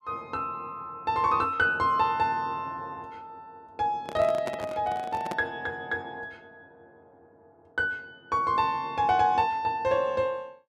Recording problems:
microphone handling noise; from 4 to 5.5 s; peak -3 dB vs average level

